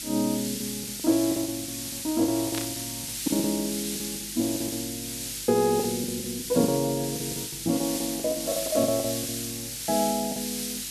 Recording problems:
electrical hum; 50 Hz, harmonics up to 350 Hz, SNR 22 dB
background hiss; SNR 3 dB
packet loss; 15% of the sound replaced, filled with the last packet
burst of static; at 2.5 s; peak -2 dB vs average level

